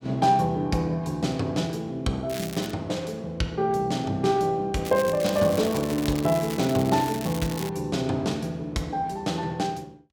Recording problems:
crackle; at 2.5 s and from 5 to 7.5 s; loose cable, SNR 12 dB

